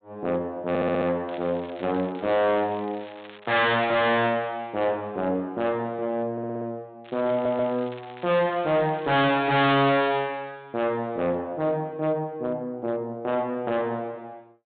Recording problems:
treble cut off; nothing above 4 kHz
distortion; hard clipping, uneven, signal-to-distortion ratio 6 dB
stutter; at 0.5 s, at 6.5 s and at 7.5 s
crackling; from 1.5 to 4 s and from 7 to 9 s; loose cable, SNR 23 dB

